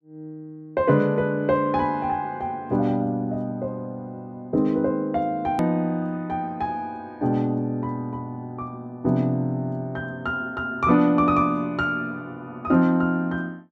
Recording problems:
edit click; at 5.5 s

